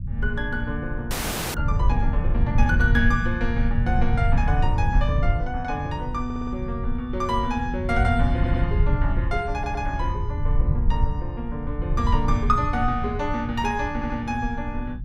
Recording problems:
rumble; below 96 Hz, SNR -1 dB
frozen audio; at 1 s
audio stuttering; 4 times, first at 6.5 s

